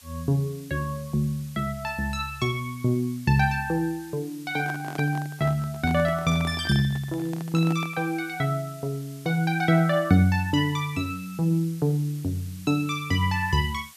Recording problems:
background hiss; slope +3 dB per octave, SNR 22 dB
microphone handling noise; from 4.5 to 8 s; peak -6 dB vs average level

